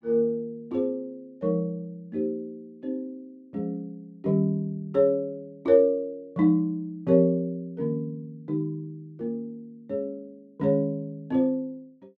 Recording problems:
none

